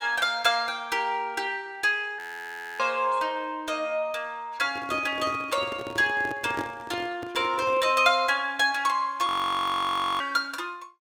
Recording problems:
audio freezing; at 2 s for 0.5 s and at 9.5 s for 1 s
handling noise; from 4.5 to 8 s; peak -3 dB vs average level

